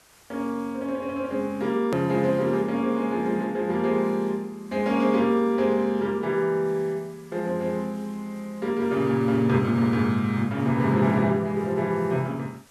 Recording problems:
hiss; slope -2 dB per octave, SNR 29 dB
hard cut with a click; at 2 s

